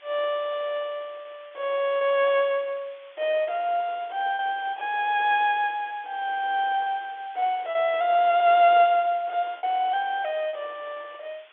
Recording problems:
phone line; 300 Hz to 3.5 kHz, G.711
hiss; SNR 27 dB
lost packets; 6% of the sound replaced, filled with repeated pitch periods

